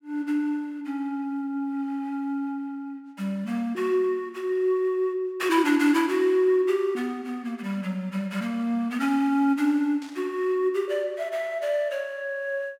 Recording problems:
static burst; at 10 s; peak -15 dB vs average level

